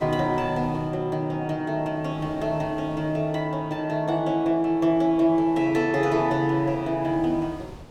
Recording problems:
wind noise; below 580 Hz, SNR 21 dB

